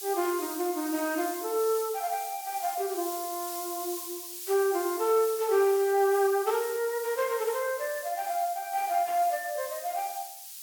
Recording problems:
background hiss; slope +8 dB per octave, SNR 10 dB

